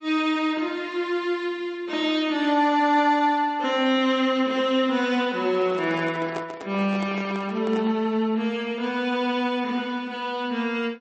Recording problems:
codec artefacts; MP3, log-spectral distance 2 dB, nothing above 8.2 kHz
microphone handling noise; from 5.5 to 8 s; peak -5 dB vs average level

